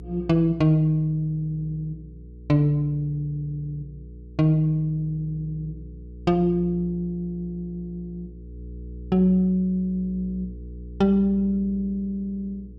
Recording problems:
hum; 60 Hz, harmonics up to 480 Hz, SNR 17 dB

